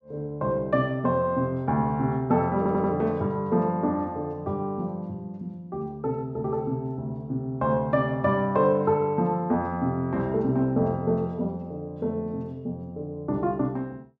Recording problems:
stutter; at 2.5 s

